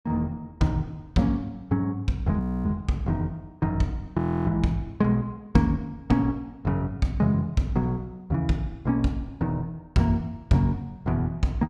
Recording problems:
audio freezing; at 2.5 s and at 4 s

